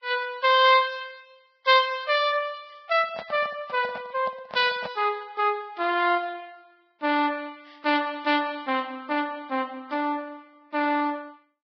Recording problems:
codec artefacts; Vorbis, log-spectral distance 3 dB, nothing above 4.8 kHz
microphone handling noise; from 3 to 5 s; peak -6 dB vs average level

